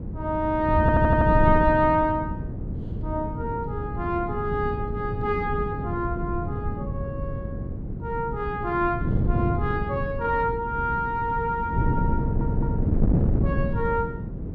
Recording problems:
wind on the microphone; below 200 Hz, SNR 2 dB
stutter; at 1 s and at 12 s

